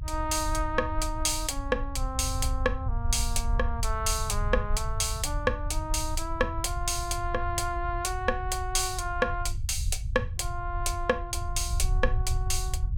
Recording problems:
low-frequency rumble; below 74 Hz, SNR 4 dB

